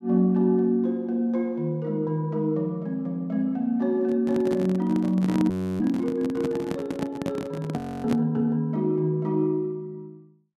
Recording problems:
handling noise; from 4 to 8 s; peak 0 dB vs average level
frozen audio; at 5.5 s and at 8 s

